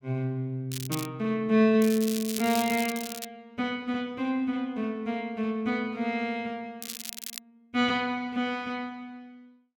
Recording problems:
crackle; at 0.5 s, from 2 to 3.5 s and at 7 s; loose cable, SNR 9 dB

